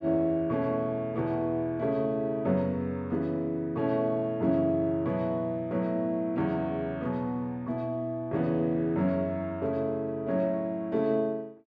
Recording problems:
none

